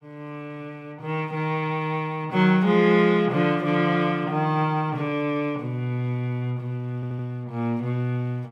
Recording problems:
audio stuttering; at 7 s

